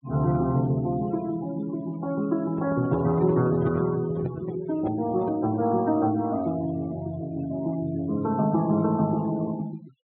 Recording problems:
treble missing; nothing above 4 kHz
denoising artefacts; signal-to-artefact ratio 19 dB
handling noise; from 2.5 to 5.5 s; peak -4 dB vs average level

